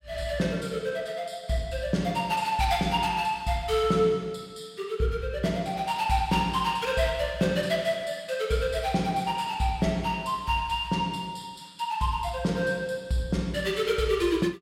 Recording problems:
none

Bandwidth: 16 kHz